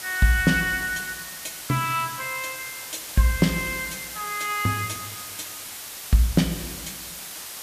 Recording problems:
hiss; slope +1 dB per octave, SNR 9 dB

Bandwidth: 14.5 kHz